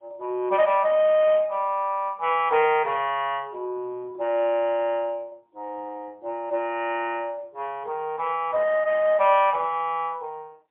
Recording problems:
telephone audio; 340 Hz to 3.3 kHz, AMR-NB, then MP3

